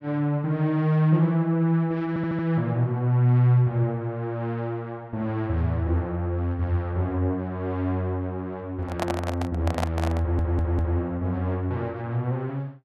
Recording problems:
audio stuttering; at 2 s and at 10 s
microphone handling noise; from 9 to 11 s; peak +2 dB vs average level

